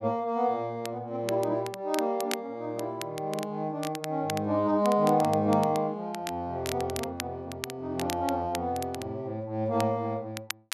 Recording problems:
crackling; vinyl, SNR 12 dB

